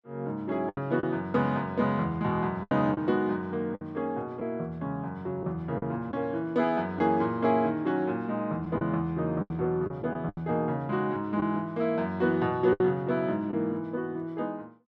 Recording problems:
lost packets; 5% of the sound replaced, filled with the last packet

